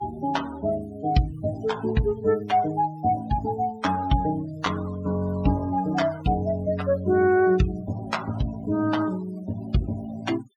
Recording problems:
noise reduction artefacts; signal-to-artefact ratio 17 dB

